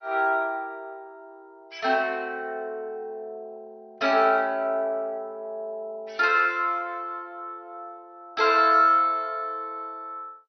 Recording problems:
lossy codec; MP2, log-spectral distance 2 dB, nothing above 4.9 kHz

